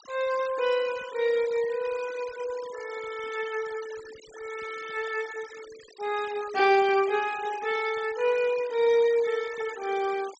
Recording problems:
treble missing; nothing above 8 kHz
noise reduction artefacts; signal-to-artefact ratio 18 dB

